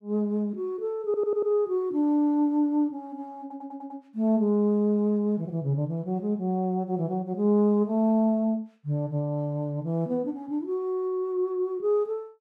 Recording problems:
audio stuttering; at 1 s and at 3.5 s

